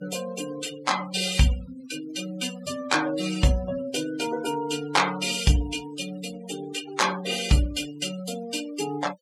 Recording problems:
noise reduction artefacts; signal-to-artefact ratio 13 dB

